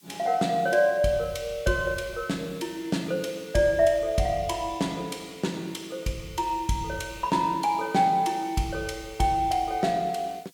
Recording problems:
background hiss; slope +4 dB per octave, SNR 27 dB

